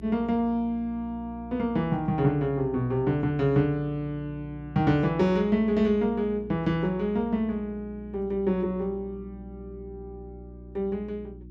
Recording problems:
electrical hum; 60 Hz, harmonics up to 360 Hz, SNR 17 dB

